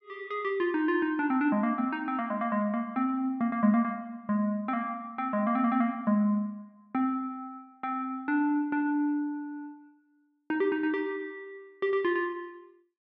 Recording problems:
none

